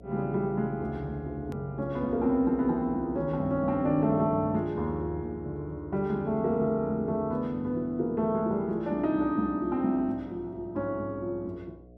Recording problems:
mains hum; 60 Hz, harmonics up to 720 Hz, SNR 21 dB
edit click; at 1.5 s

